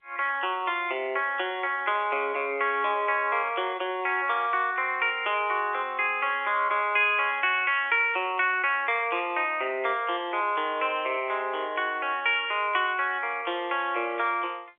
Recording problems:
phone line; 300 Hz to 3.7 kHz, G.711

